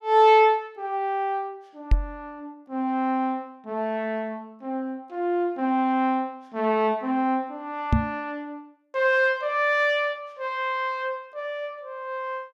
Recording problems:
knock on the microphone; at 2 s and at 8 s; peak +7 dB vs average level

